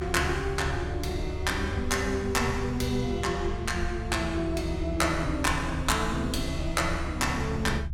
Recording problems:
rumble; below 78 Hz, SNR 7 dB

